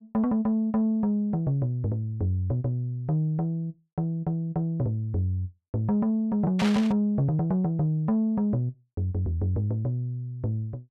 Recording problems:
static burst; at 6.5 s; peak -1 dB vs average level

